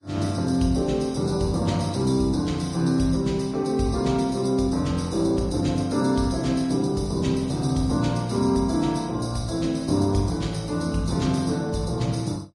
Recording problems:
lossy compression; Vorbis, log-spectral distance 3 dB, nothing above 10.4 kHz

